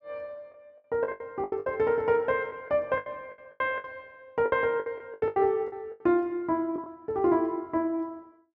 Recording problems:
packet loss; 14% of the sound replaced, filled with the last packet

